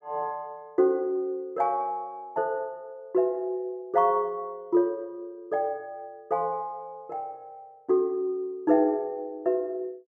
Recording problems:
none

